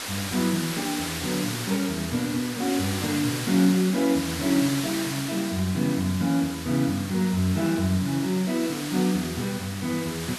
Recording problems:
hiss; slope 0 dB per octave, SNR 7 dB

